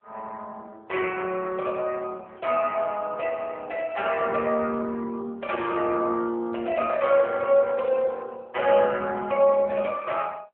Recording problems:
telephone audio; 260 Hz to 3.2 kHz, AMR-NB

